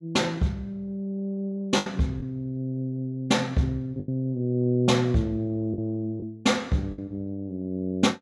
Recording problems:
lost packets; 4% of the sound replaced, filled with the last packet

